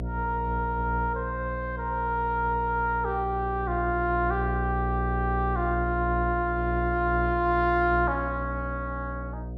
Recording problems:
hum; 60 Hz, harmonics up to 720 Hz, SNR 5 dB

